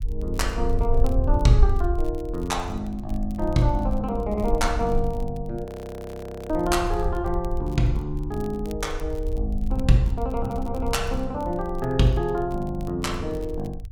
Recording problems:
low-frequency rumble; below 58 Hz, strongest tone 20 Hz, SNR 5 dB
crackle; vinyl, SNR 28 dB
audio freezing; at 5.5 s for 1 s

